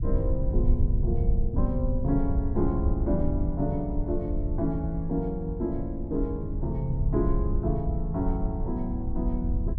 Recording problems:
low-frequency rumble; below 80 Hz, SNR 0 dB

